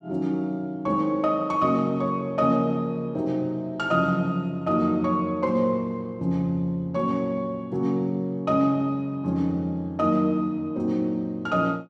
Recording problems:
none

